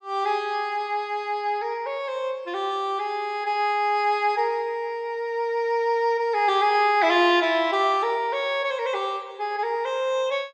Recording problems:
none

